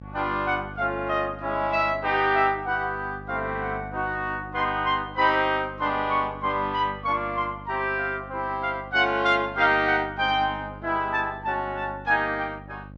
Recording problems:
electrical hum; 50 Hz, harmonics up to 850 Hz, SNR 17 dB

